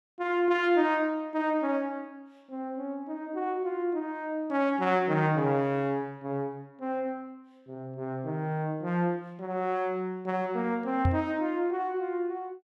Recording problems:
microphone bump; at 11 s; peak +6 dB vs average level

